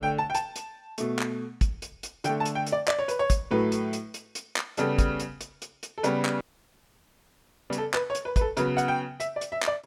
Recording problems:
audio cutting out; at 6.5 s for 1.5 s

